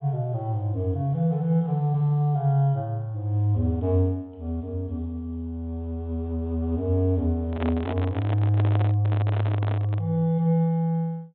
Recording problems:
treble missing; nothing above 4 kHz
microphone handling noise; from 7.5 to 10 s; peak -3 dB vs average level

